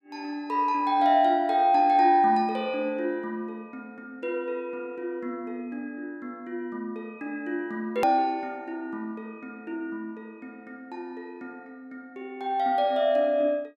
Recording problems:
edit click; at 8 s

